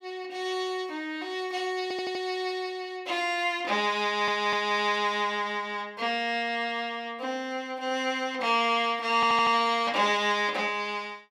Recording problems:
audio stuttering; at 2 s, at 4 s and at 9 s

